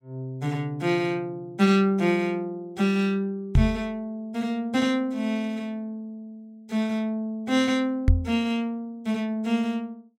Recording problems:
microphone thump; at 3.5 s and at 8 s; peak +9 dB vs average level

